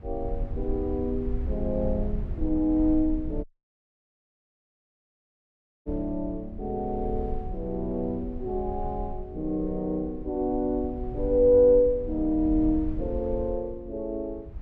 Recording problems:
low-frequency rumble; below 70 Hz, SNR 10 dB
audio cutting out; at 3.5 s for 2.5 s

